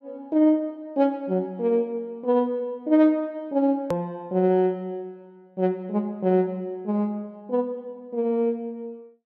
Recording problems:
edit click; at 4 s

